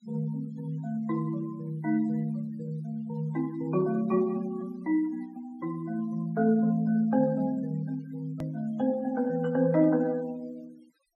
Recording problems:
noise reduction artefacts; signal-to-artefact ratio 25 dB
click at an edit; at 8.5 s

